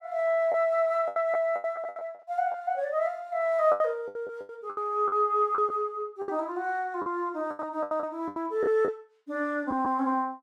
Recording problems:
packet loss; 12% of the sound replaced, filled with the last packet

